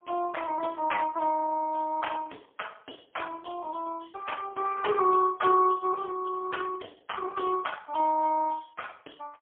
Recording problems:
telephone audio; 280 Hz to 3.3 kHz, AMR-NB, then MP3

